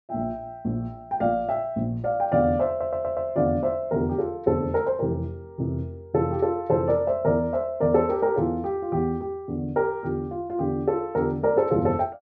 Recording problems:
audio stuttering; at 2.5 s

